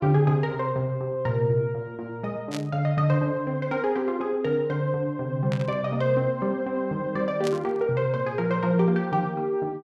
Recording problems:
static burst; at 2.5 s, at 5.5 s and at 7.5 s; peak -6 dB vs average level

